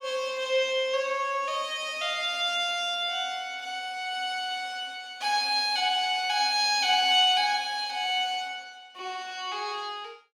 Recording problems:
none

